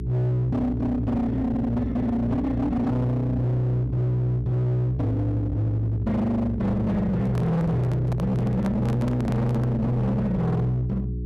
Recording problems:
distorted audio; hard clipping, signal-to-distortion ratio 7 dB
hum; 60 Hz, harmonics up to 420 Hz, SNR 8 dB
stutter; at 1.5 s
microphone handling noise; from 7 to 9.5 s; peak -4 dB vs average level

